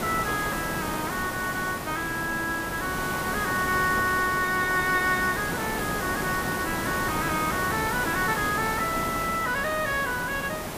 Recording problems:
hiss; slope -5 dB per octave, SNR 4 dB

